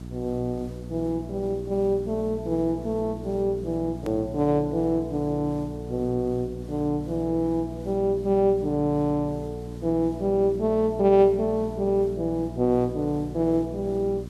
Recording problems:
hum; 60 Hz, harmonics up to 720 Hz, SNR 12 dB
background hiss; slope -4 dB per octave, SNR 26 dB
edit click; at 4 s

